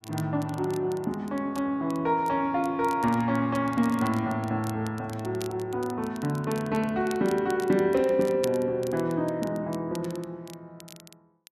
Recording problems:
crackle; vinyl, SNR 21 dB

